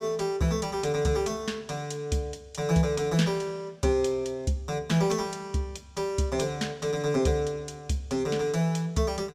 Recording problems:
none

